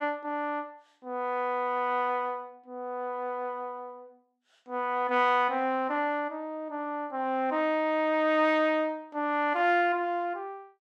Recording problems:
none

